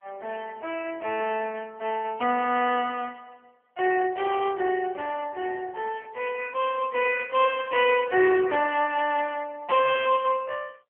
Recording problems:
telephone audio; 300 Hz to 3.1 kHz, AMR-NB

